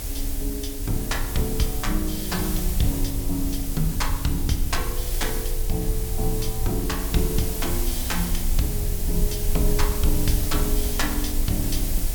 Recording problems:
hiss; SNR 3 dB
rumble; below 50 Hz, strongest tone 26 Hz, SNR 2 dB

